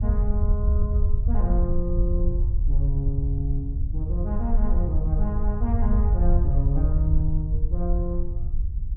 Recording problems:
rumble; below 68 Hz, SNR -6 dB
wind noise; below 72 Hz, SNR 10 dB

